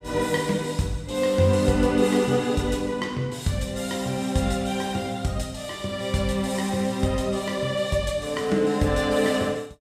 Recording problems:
none

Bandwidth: 15 kHz